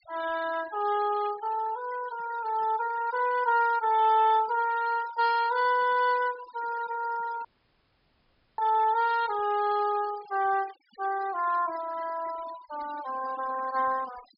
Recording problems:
treble missing; nothing above 5.5 kHz
noise reduction artefacts; signal-to-artefact ratio 18 dB
audio cutting out; at 7.5 s for 1 s

